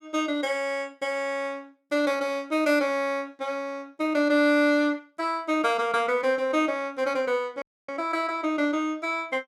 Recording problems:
audio cutting out; at 7.5 s

